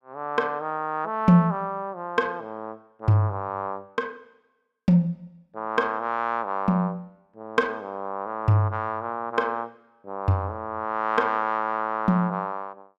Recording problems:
none

